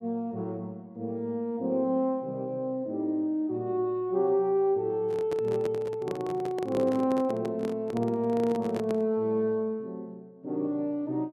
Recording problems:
microphone handling noise; from 5 to 9 s; peak -3 dB vs average level

